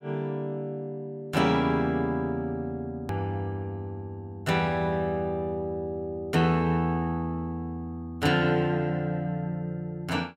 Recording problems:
click at an edit; at 3 s

